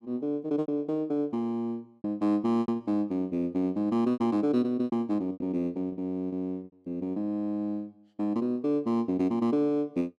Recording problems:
lost packets; 7% of the sound replaced, filled with repeated pitch periods

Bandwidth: 12.5 kHz